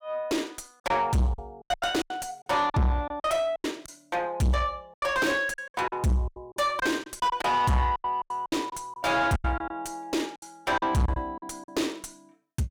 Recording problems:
distortion; soft clipping, signal-to-distortion ratio 7 dB
packet loss; 13% of the sound replaced, filled with silence

